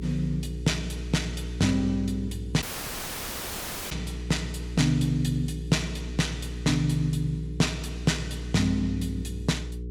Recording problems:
hum; 60 Hz, harmonics up to 480 Hz, SNR 8 dB
audio cutting out; at 2.5 s for 1.5 s

